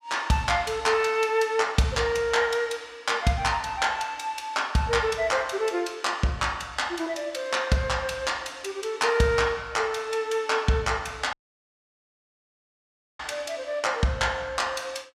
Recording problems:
dropout; at 11 s for 2 s

